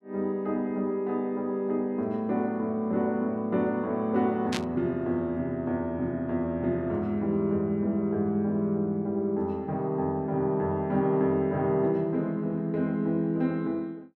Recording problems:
burst of static; at 4.5 s; peak 0 dB vs average level

